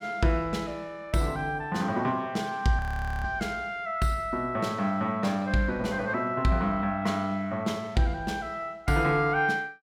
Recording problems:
frozen audio; at 3 s

